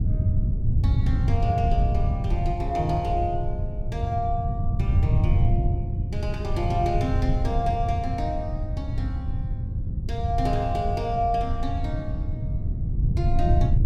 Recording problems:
rumble; below 110 Hz, SNR -3 dB

